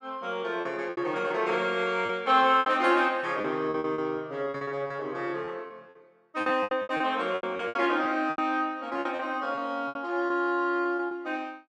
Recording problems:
lost packets; 13% of the sound replaced, filled with repeated pitch periods

